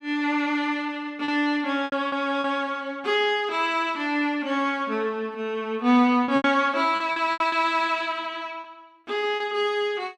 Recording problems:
lost packets; 6% of the sound replaced, filled with repeated pitch periods

